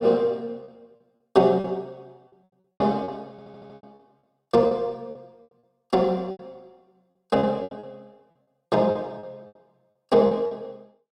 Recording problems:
packet loss; 12% of the sound replaced, filled with repeated pitch periods
audio stuttering; at 3.5 s

